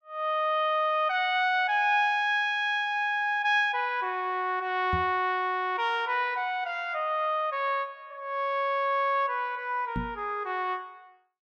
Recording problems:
microphone bump; at 5 s and at 10 s; peak -2 dB vs average level

